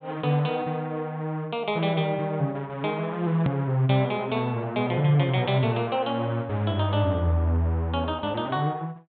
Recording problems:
treble cut off; nothing above 4 kHz
click at an edit; at 3.5 s

